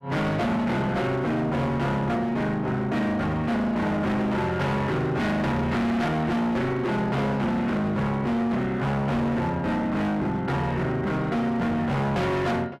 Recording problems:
distortion; hard clipping, signal-to-distortion ratio 7 dB

